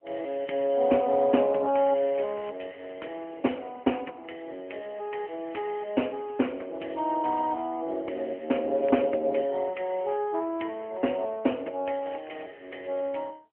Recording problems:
telephone audio; 220 Hz to 3.1 kHz, AMR-NB
crackling; at 1.5 s, at 9 s and at 12 s; loose cable, SNR 24 dB

